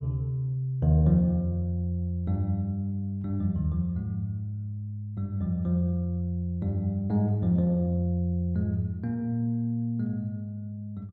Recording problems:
none

